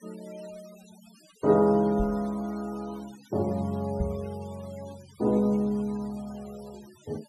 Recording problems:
denoising artefacts; signal-to-artefact ratio 24 dB
microphone bump; at 2 s and at 4 s; peak +1 dB vs average level

